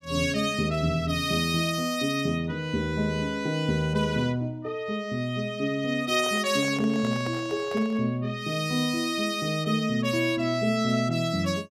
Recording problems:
microphone handling noise; from 6 to 8 s; peak -8 dB vs average level

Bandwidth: 15.5 kHz